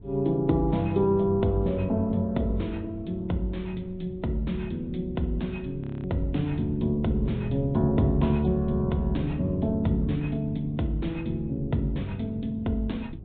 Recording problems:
treble missing; nothing above 3.9 kHz
lossy compression; MP3, log-spectral distance 2 dB
wind on the microphone; below 160 Hz, SNR 14 dB
audio freezing; at 6 s

